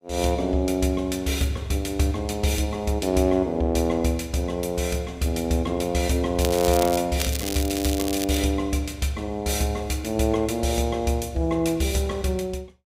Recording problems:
crackling; at 6.5 s and from 7 to 8.5 s; loose cable, SNR 7 dB

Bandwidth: 15.5 kHz